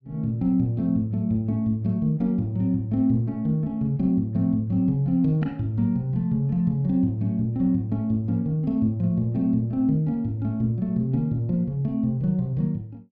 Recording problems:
none

